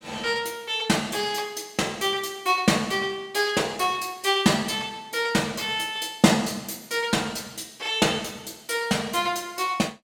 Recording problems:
none

